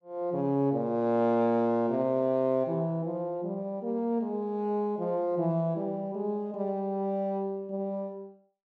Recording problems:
none

